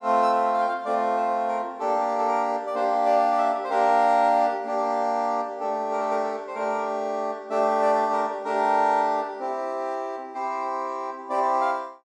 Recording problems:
none

